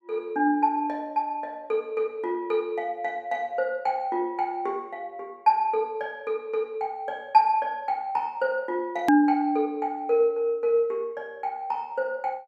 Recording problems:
hard cut with a click; at 9 s

